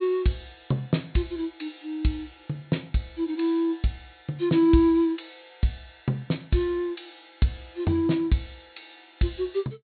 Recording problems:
treble missing; nothing above 4.4 kHz

